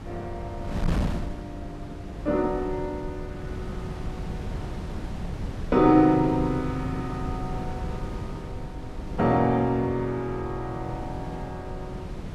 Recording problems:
wind noise; below 210 Hz, SNR 9 dB

